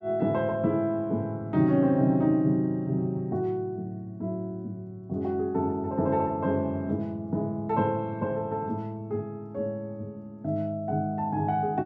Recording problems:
none

